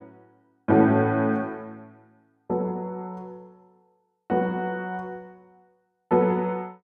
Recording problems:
none

